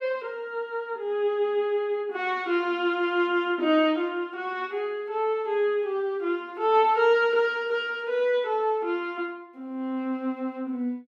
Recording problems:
none

